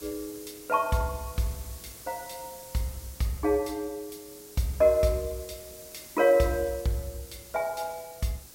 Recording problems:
background hiss; SNR 16 dB

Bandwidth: 16 kHz